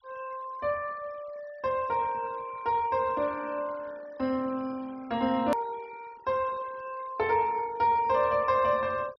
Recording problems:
low-pass filter; nothing above 5.9 kHz
denoising artefacts; signal-to-artefact ratio 24 dB
hard cut with a click; at 5.5 s

